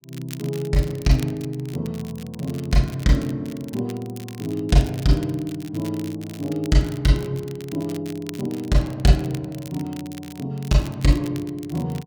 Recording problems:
crackling; vinyl, SNR 19 dB

